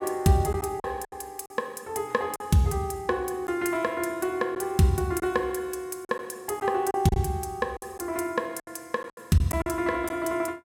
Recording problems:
packet loss; 6% of the sound replaced, filled with silence

